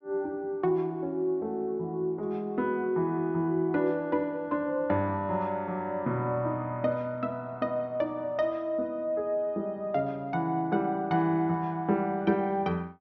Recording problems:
treble missing; nothing above 6.3 kHz

